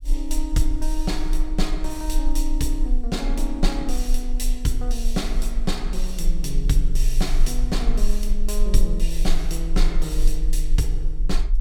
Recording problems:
rumble; below 34 Hz, strongest tone 22 Hz, SNR -2 dB

